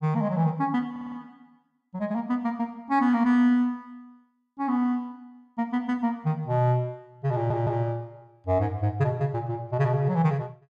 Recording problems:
stutter; at 1 s and at 7.5 s

